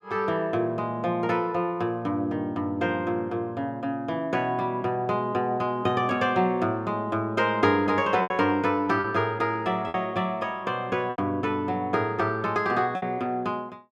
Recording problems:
packet loss; 2% of the sound replaced, filled with repeated pitch periods

